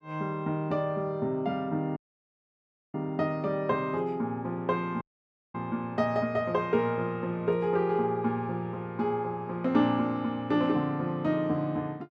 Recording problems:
dropout; at 2 s for 1 s and at 5 s for 0.5 s

